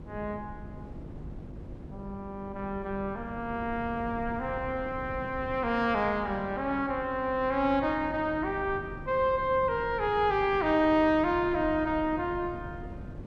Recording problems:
mains hum; 50 Hz, harmonics up to 350 Hz, SNR 19 dB
wind noise; below 260 Hz, SNR 16 dB

